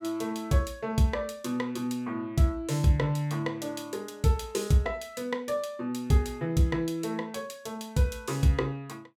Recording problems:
none

